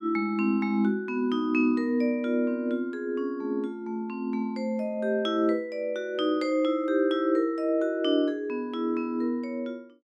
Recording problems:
none

